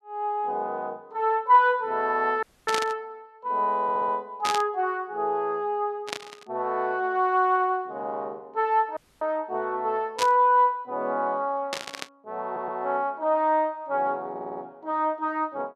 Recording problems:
dropout; at 2.5 s and at 9 s
static burst; 5 times, first at 2.5 s; peak +1 dB vs average level
stutter; at 4 s, at 12 s and at 14 s

